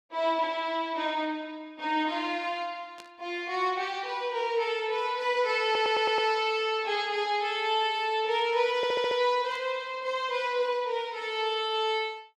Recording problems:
burst of static; at 3 s and at 9.5 s; peak -14 dB vs average level
stutter; at 5.5 s and at 9 s

